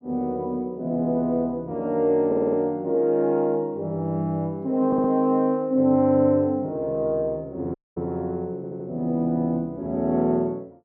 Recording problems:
audio stuttering; at 2.5 s, at 5 s and at 8.5 s
dropout; at 8 s

